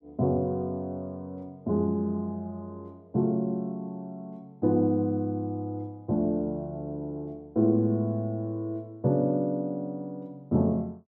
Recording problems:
none

